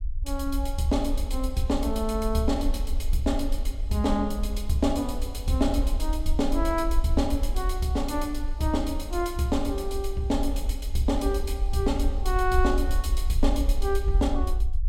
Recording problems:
low-frequency rumble; below 52 Hz, SNR 3 dB

